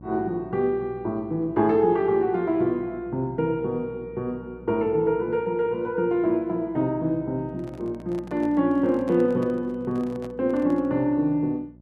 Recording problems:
electrical hum; 60 Hz, harmonics up to 660 Hz, SNR 21 dB
microphone handling noise; from 7.5 to 11 s; peak -12 dB vs average level

